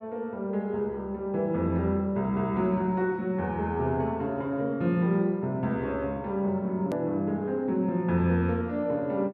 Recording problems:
hard cut with a click; at 7 s

